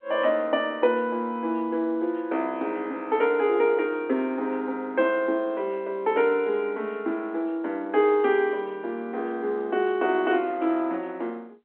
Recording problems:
telephone audio; 220 Hz to 3.3 kHz, G.711

